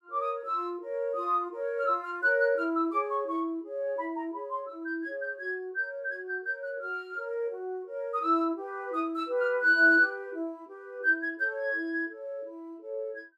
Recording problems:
none

